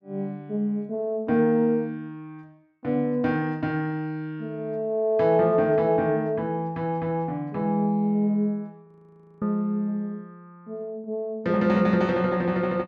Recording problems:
frozen audio; at 9 s for 0.5 s

